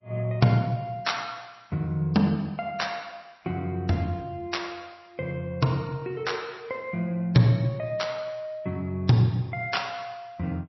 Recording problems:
codec artefacts; MP3, log-spectral distance 3 dB, nothing above 5.7 kHz

